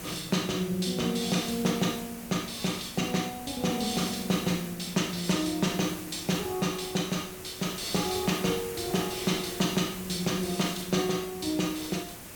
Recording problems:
background hiss; slope -3 dB per octave, SNR 11 dB

